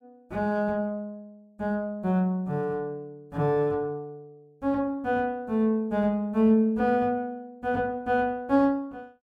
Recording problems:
none

